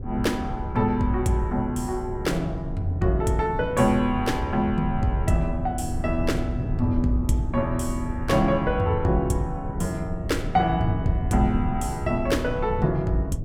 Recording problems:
rumble; below 130 Hz, SNR 7 dB

